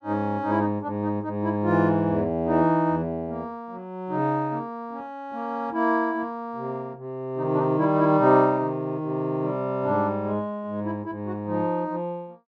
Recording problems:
none

